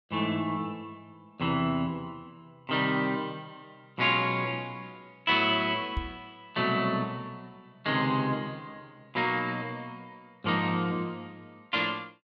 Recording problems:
knock on the microphone; at 6 s; peak 0 dB vs average level

